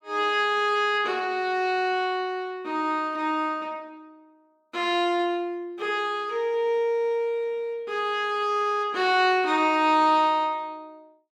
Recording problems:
none

